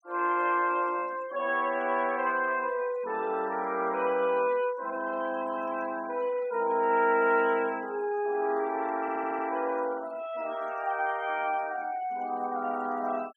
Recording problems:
denoising artefacts; signal-to-artefact ratio 22 dB
stutter; at 9 s

